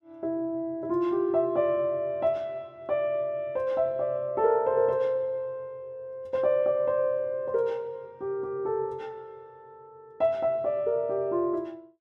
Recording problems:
none

